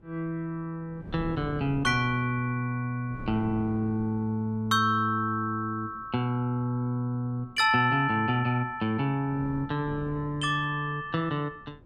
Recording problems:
wind on the microphone; below 280 Hz, SNR 16 dB

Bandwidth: 13 kHz